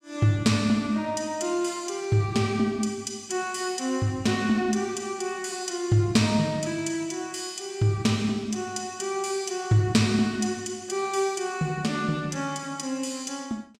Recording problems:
none

